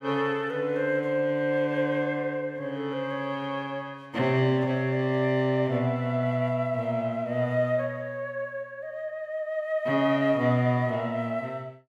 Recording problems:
none

